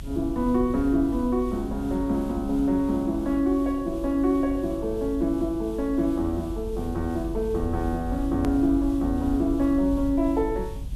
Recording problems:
background hiss; SNR 27 dB
rumble; below 70 Hz, strongest tone 48 Hz, SNR 11 dB
edit click; at 8.5 s

